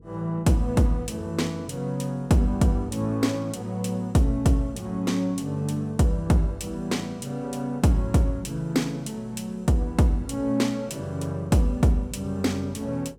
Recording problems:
hum; 50 Hz, harmonics up to 500 Hz, SNR 28 dB

